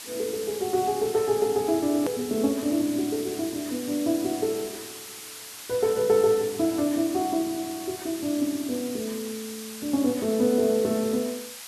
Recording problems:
hiss; slope +2 dB per octave, SNR 12 dB
hard cut with a click; at 2 s

